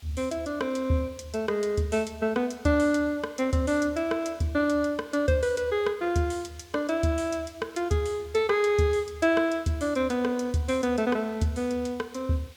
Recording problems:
hiss; slope 0 dB per octave, SNR 26 dB

